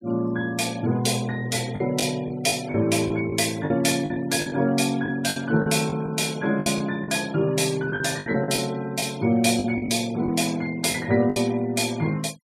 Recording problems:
noise reduction artefacts; signal-to-artefact ratio 22 dB
packet loss; 8% of the sound replaced, filled with the last packet

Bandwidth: 15.5 kHz